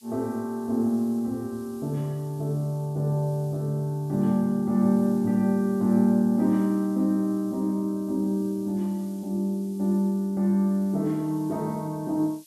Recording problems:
hiss; slope +8 dB per octave, SNR 27 dB

